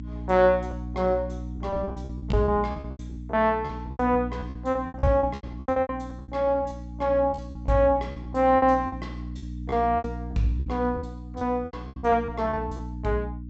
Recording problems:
low-pass filter; nothing above 7.7 kHz
electrical hum; 60 Hz, harmonics up to 300 Hz, SNR 11 dB
packet loss; 16% of the sound replaced, filled with repeated pitch periods

